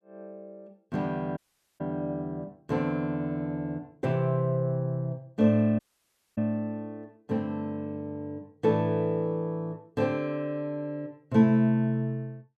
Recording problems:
dropout; at 1.5 s and at 6 s for 0.5 s

